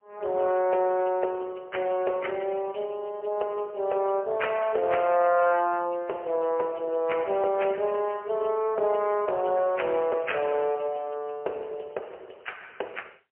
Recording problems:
phone line; 340 Hz to 3 kHz, AMR-NB, then MP3

